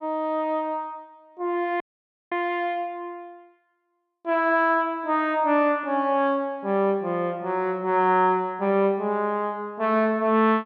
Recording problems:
dropout; at 2 s for 0.5 s

